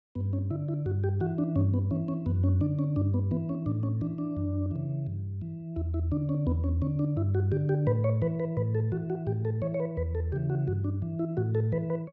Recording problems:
none

